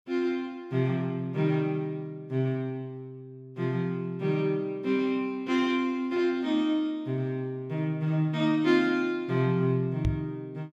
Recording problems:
microphone bump; at 10 s; peak +4 dB vs average level

